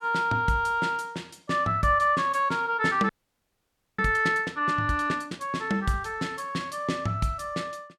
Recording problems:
audio freezing; at 3 s for 1 s

